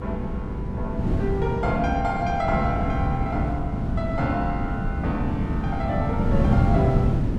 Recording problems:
hum; 60 Hz, harmonics up to 720 Hz, SNR 10 dB
wind on the microphone; below 210 Hz, SNR -2 dB

